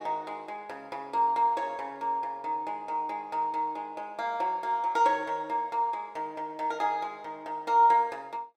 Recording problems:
none

